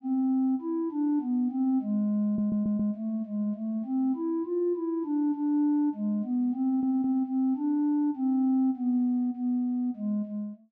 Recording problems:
audio stuttering; at 2.5 s and at 6.5 s

